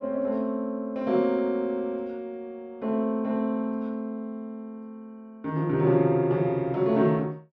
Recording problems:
none

